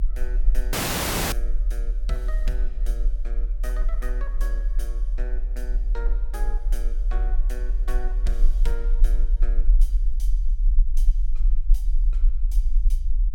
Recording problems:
rumble; below 40 Hz, SNR -15 dB
dropout; at 0.5 s for 0.5 s

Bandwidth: 18 kHz